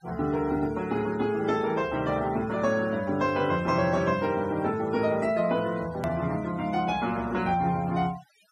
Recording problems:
denoising artefacts; signal-to-artefact ratio 20 dB
click at an edit; at 6 s

